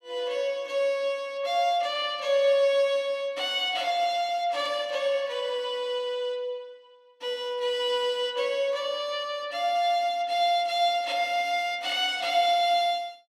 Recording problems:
none

